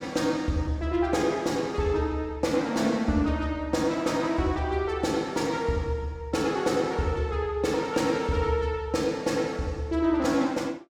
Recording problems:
none

